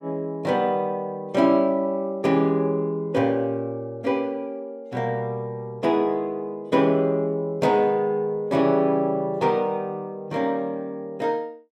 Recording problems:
none

